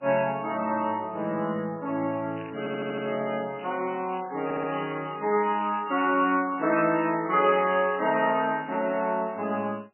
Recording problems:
lossy codec; MP3, log-spectral distance 8 dB, nothing above 2.5 kHz
crackle; at 2.5 s and from 3.5 to 8.5 s; loose cable, SNR 19 dB
stutter; at 2.5 s and at 4.5 s

